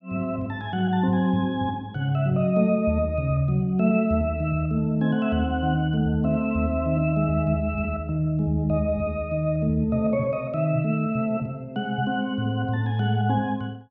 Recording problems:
none

